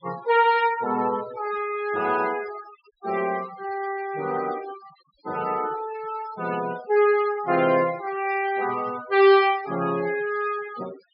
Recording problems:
treble cut off; nothing above 5.5 kHz
denoising artefacts; signal-to-artefact ratio 17 dB

